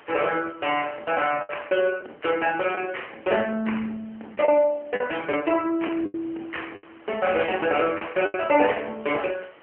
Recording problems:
phone line; 240 Hz to 3.1 kHz, AMR-NB
hiss; SNR 27 dB
packet loss; 5% of the sound replaced, filled with the last packet

